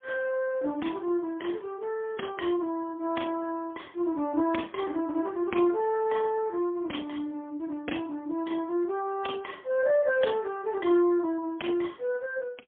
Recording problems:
phone line; 240 Hz to 3.4 kHz, AMR-NB, then MP3

